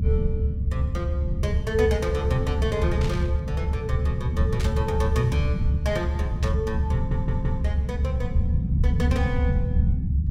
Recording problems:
rumble; below 130 Hz, SNR -5 dB
burst of static; at 3 s, at 4.5 s and at 6.5 s; peak -2 dB vs average level
audio stuttering; at 7 s

